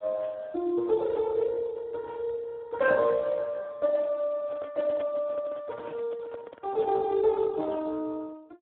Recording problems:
phone line; 86 Hz to 2.1 kHz, Speex
microphone handling noise; from 4.5 to 7 s; peak -7 dB vs average level

